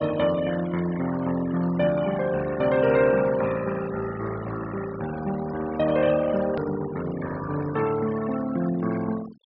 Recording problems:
treble cut off; nothing above 5.5 kHz
denoising artefacts; signal-to-artefact ratio 13 dB
edit click; at 6.5 s

